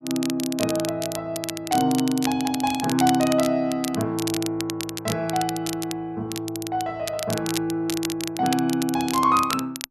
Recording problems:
crackle; vinyl, SNR 8 dB

